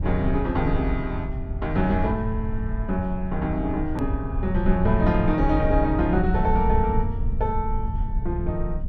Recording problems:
rumble; below 82 Hz, SNR 3 dB
click at an edit; at 4 s

